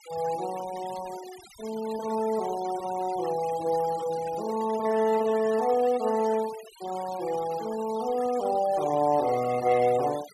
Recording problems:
denoising artefacts; signal-to-artefact ratio 17 dB

